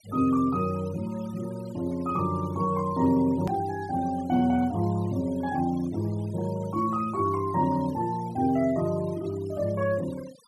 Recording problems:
denoising artefacts; signal-to-artefact ratio 21 dB
edit click; at 3.5 s

